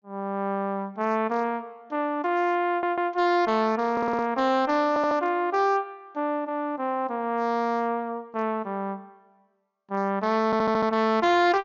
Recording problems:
low-pass filter; nothing above 7 kHz
distortion; hard clipping, signal-to-distortion ratio 11 dB
audio stuttering; 4 times, first at 2.5 s

